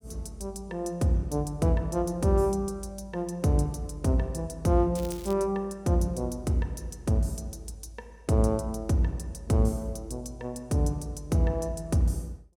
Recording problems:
crackle; at 5 s; loose cable, SNR 19 dB

